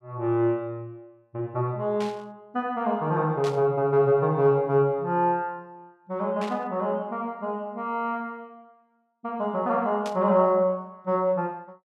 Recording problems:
burst of static; 4 times, first at 2 s; peak -9 dB vs average level

